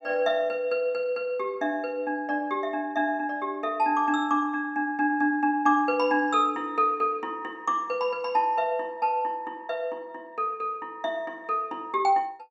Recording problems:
none

